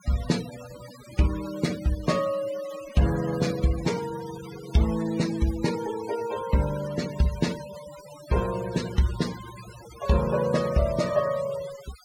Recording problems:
denoising artefacts; signal-to-artefact ratio 14 dB

